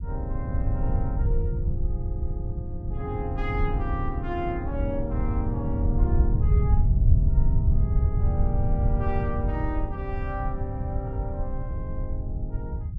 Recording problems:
low-frequency rumble; below 96 Hz, SNR -7 dB

